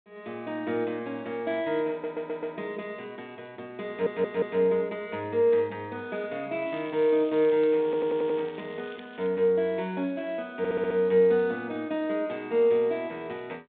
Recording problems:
telephone audio; 260 Hz to 3.7 kHz, G.726
stutter; 4 times, first at 2 s
crackling; from 6.5 to 9.5 s; loose cable, SNR 24 dB

